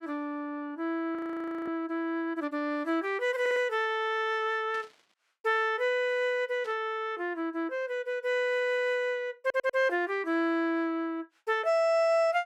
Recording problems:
audio freezing; at 1 s for 0.5 s
stutter; at 3.5 s, at 8.5 s and at 9.5 s
burst of static; at 4.5 s and at 6.5 s; peak -16 dB vs average level

